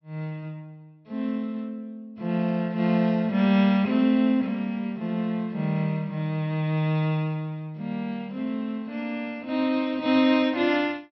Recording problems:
treble missing; nothing above 5.5 kHz

